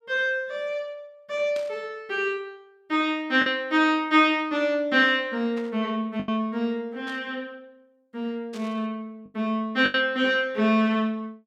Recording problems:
lost packets; 3% of the sound replaced, filled with the last packet
static burst; 4 times, first at 1.5 s; peak -12 dB vs average level

